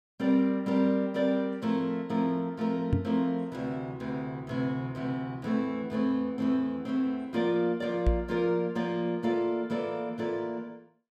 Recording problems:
knock on the microphone; at 3 s and at 8 s; peak +7 dB vs average level

